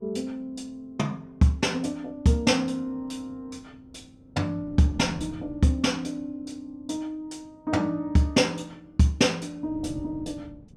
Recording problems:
wind noise; below 220 Hz, SNR 18 dB

